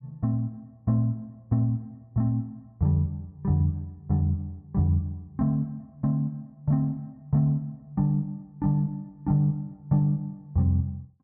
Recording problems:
none

